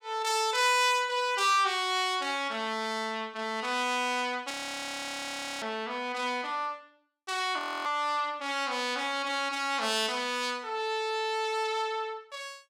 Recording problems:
frozen audio; at 4.5 s for 1 s and at 7.5 s

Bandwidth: 16.5 kHz